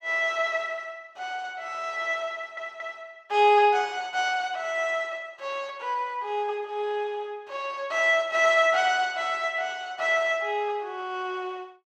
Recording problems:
audio stuttering; at 2.5 s

